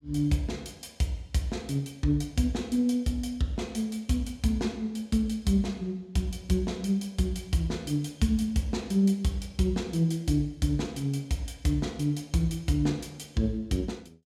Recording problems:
none

